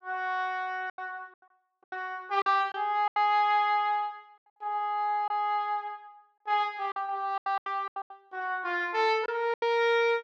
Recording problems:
packet loss; 9% of the sound replaced, filled with silence

